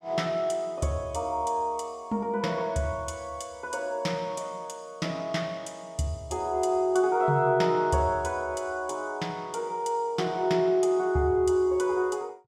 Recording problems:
none

